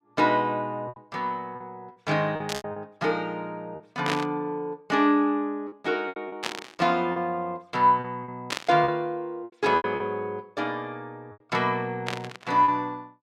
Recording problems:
packet loss; 8% of the sound replaced, filled with repeated pitch periods
burst of static; 5 times, first at 2.5 s; peak +2 dB vs average level

